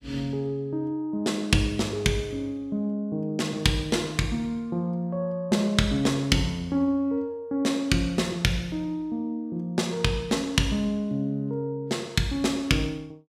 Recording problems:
none

